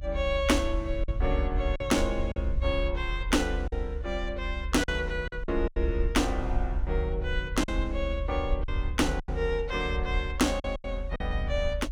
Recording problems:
rumble; below 66 Hz, strongest tone 40 Hz, SNR 3 dB
packet loss; 6% of the sound replaced, filled with silence

